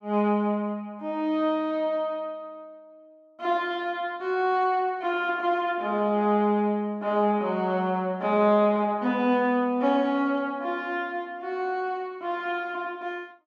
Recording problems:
none

